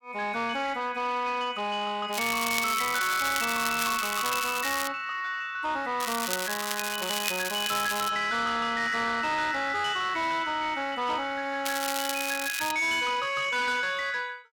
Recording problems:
distorted audio; soft clipping, signal-to-distortion ratio 12 dB
crackle; from 2 to 5 s, from 6 to 8 s and from 12 to 13 s; loose cable, SNR 4 dB

